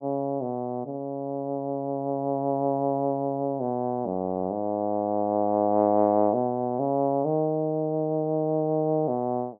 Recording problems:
none

